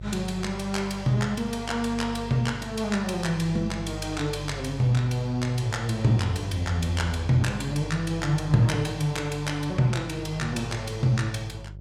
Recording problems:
hum; 50 Hz, harmonics up to 550 Hz, SNR 13 dB

